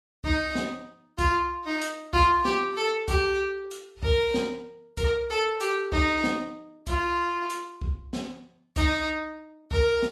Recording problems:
lossy compression; Vorbis, log-spectral distance 3 dB, nothing above 12.3 kHz

